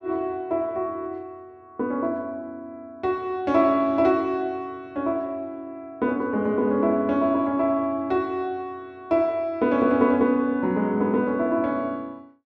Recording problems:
none

